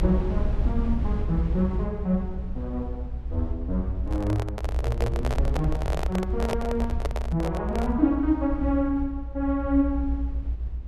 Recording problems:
low-frequency rumble; below 66 Hz, SNR 2 dB
microphone handling noise; from 4 to 8 s; peak +2 dB vs average level

